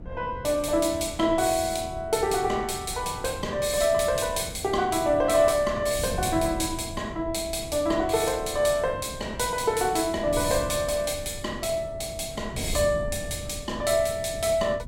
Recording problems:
wind on the microphone; below 190 Hz, SNR 13 dB

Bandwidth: 16.5 kHz